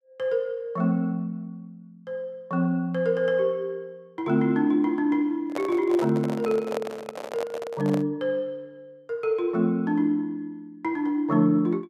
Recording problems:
microphone handling noise; from 5.5 to 8 s; peak -2 dB vs average level

